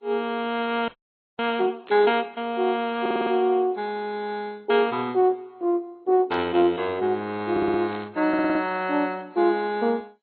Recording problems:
lossy codec; MP2, then AAC, log-spectral distance 3 dB, nothing above 4 kHz
audio freezing; at 1 s for 0.5 s
static burst; at 2 s, at 5 s and at 8 s; peak -15 dB vs average level
stutter; at 3 s, at 7.5 s and at 8.5 s

